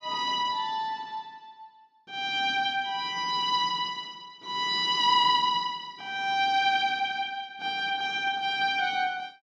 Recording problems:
none

